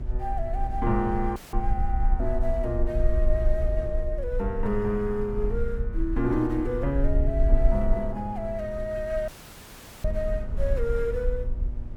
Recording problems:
hum; 60 Hz, harmonics up to 960 Hz, SNR 16 dB
rumble; below 50 Hz, strongest tone 24 Hz, SNR 1 dB
wind noise; below 220 Hz, SNR 17 dB
dropout; at 1.5 s and at 9.5 s for 1 s; filled with static

